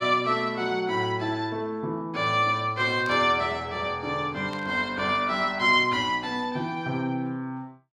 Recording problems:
static burst; at 3 s and at 4.5 s; peak -13 dB vs average level

